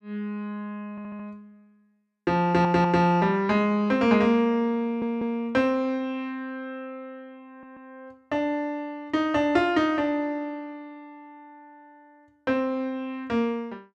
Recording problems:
stutter; 4 times, first at 1 s

